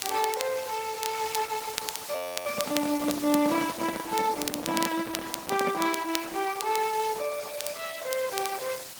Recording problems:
lossy compression; Opus, then Opus, log-spectral distance 8 dB, nothing above 20.1 kHz
hiss; slope 0 dB per octave, SNR 10 dB
crackle; vinyl, SNR 8 dB
audio freezing; at 2 s
microphone handling noise; from 2.5 to 6 s; peak 0 dB vs average level

